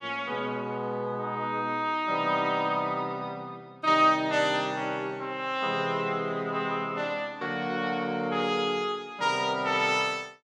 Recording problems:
none

